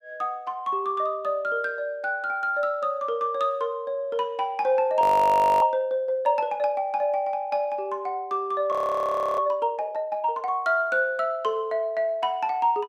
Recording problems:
audio freezing; at 5 s for 0.5 s and at 8.5 s for 0.5 s

